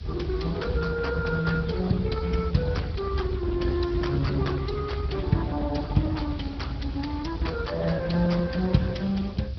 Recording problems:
treble missing; nothing above 5.5 kHz
codec artefacts; Speex, log-spectral distance 3 dB
background hiss; slope +3 dB per octave, SNR 27 dB
low-frequency rumble; below 110 Hz, SNR 6 dB

